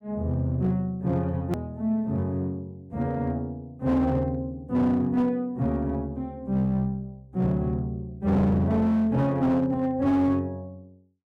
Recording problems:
distortion; hard clipping, signal-to-distortion ratio 12 dB
edit click; at 1.5 s

